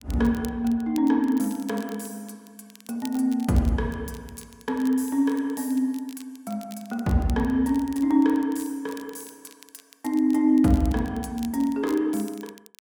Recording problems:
crackle; vinyl, SNR 23 dB

